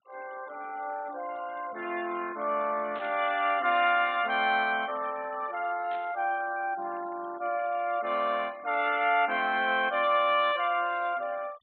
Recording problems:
treble missing; nothing above 4 kHz
noise reduction artefacts; signal-to-artefact ratio 22 dB
static burst; at 3 s and at 6 s; peak -14 dB vs average level

